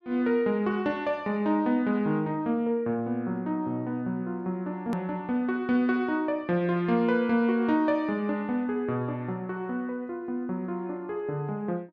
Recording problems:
click at an edit; at 5 s

